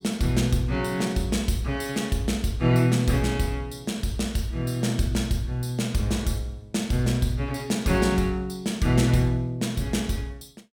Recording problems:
none

